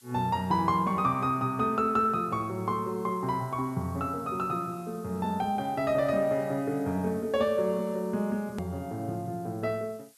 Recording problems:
background hiss; slope +3 dB per octave, SNR 26 dB
edit click; at 8.5 s

